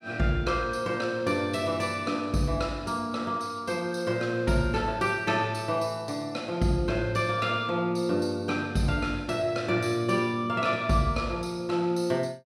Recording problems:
none

